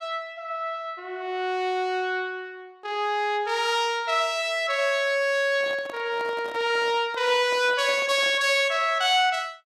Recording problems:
microphone handling noise; from 5.5 to 8.5 s; peak -11 dB vs average level

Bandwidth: 14.5 kHz